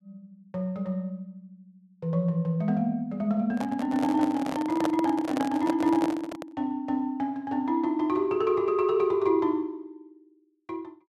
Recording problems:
handling noise; from 3.5 to 6.5 s; peak +1 dB vs average level

